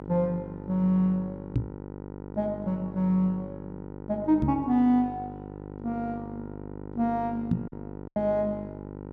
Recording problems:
electrical hum; 50 Hz, harmonics up to 1.4 kHz, SNR 12 dB
lost packets; 1.8% of the sound replaced, filled with silence
microphone bump; at 1.5 s, at 4.5 s and at 7.5 s; peak +6 dB vs average level

